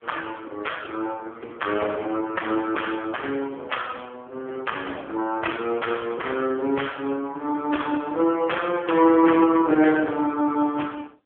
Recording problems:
telephone audio; 240 Hz to 3.4 kHz, AMR-NB

